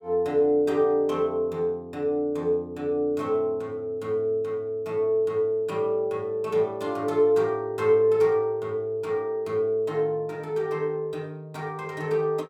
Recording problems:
none

